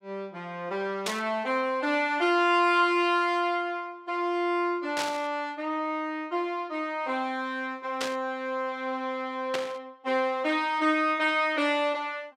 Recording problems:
burst of static; 4 times, first at 1 s; peak +1 dB vs average level

